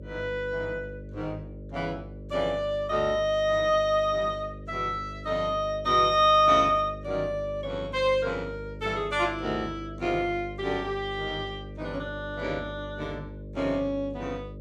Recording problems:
hum; 50 Hz, harmonics up to 600 Hz, SNR 14 dB

